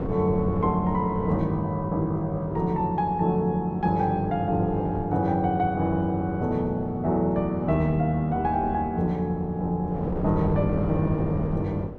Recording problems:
wind on the microphone; below 470 Hz, SNR 10 dB

